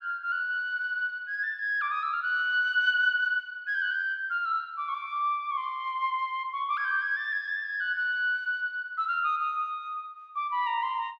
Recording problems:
none

